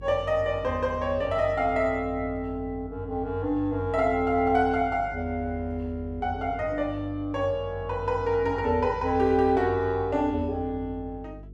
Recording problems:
electrical hum; 50 Hz, harmonics up to 450 Hz, SNR 16 dB

